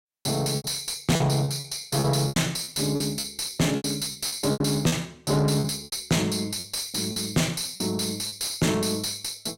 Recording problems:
distorted audio; soft clipping, signal-to-distortion ratio 7 dB
packet loss; 11% of the sound replaced, filled with repeated pitch periods

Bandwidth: 16 kHz